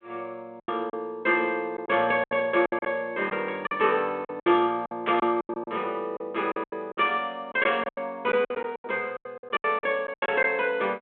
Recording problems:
telephone audio; 280 Hz to 3.6 kHz, G.726
packet loss; 14% of the sound replaced, filled with silence
static burst; at 5 s; peak -4 dB vs average level

